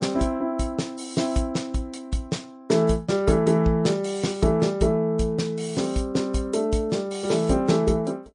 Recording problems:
codec artefacts; MP3, log-spectral distance 2 dB, nothing above 9.5 kHz

